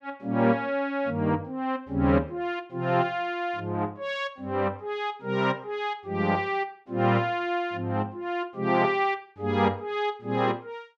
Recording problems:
none

